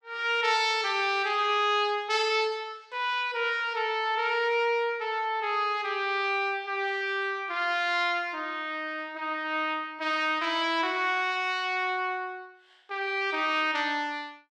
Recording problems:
none

